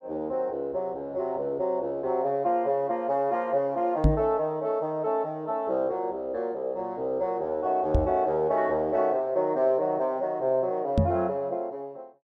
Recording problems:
microphone bump; at 4 s, at 8 s and at 11 s; peak +9 dB vs average level

